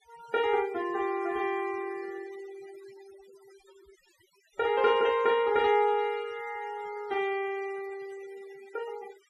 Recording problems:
noise reduction artefacts; signal-to-artefact ratio 21 dB

